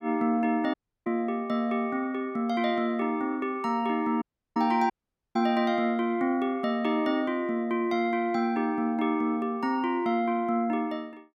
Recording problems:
audio cutting out; at 0.5 s, at 4 s and at 5 s

